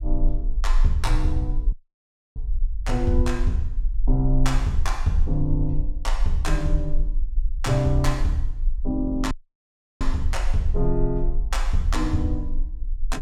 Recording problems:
low-frequency rumble; below 40 Hz, strongest tone 24 Hz, SNR 2 dB
dropout; at 1.5 s for 0.5 s and at 9.5 s for 0.5 s

